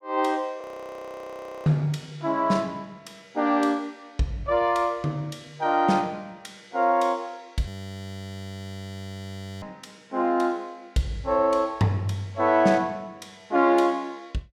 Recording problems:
frozen audio; at 0.5 s for 1 s and at 7.5 s for 2 s

